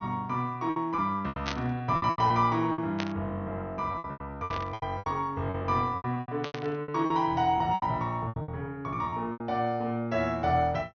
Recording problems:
treble cut off; nothing above 6.4 kHz
packet loss; 14% of the sound replaced, filled with repeated pitch periods
burst of static; 4 times, first at 1.5 s; peak 0 dB vs average level

